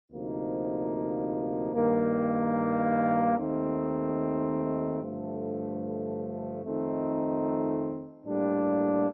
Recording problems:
lossy compression; MP2, log-spectral distance 2 dB

